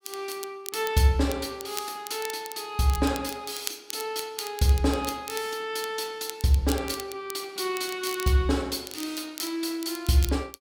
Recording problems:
crackling; vinyl, SNR 12 dB

